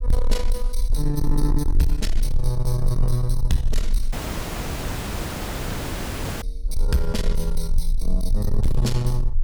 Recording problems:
distortion; soft clipping, signal-to-distortion ratio 10 dB
rumble; below 36 Hz, strongest tone 18 Hz, SNR 1 dB
dropout; at 4 s for 2.5 s

